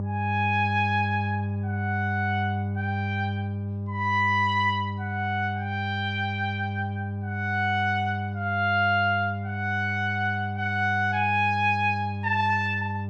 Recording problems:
hum; 50 Hz, harmonics up to 800 Hz, SNR 5 dB

